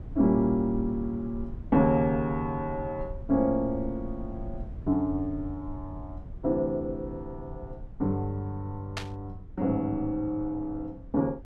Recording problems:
rumble; below 98 Hz, SNR 14 dB
burst of static; at 9 s; peak -1 dB vs average level

